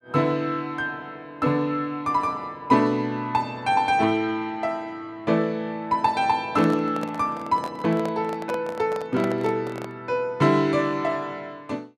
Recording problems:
handling noise; from 6.5 to 10 s; peak -4 dB vs average level

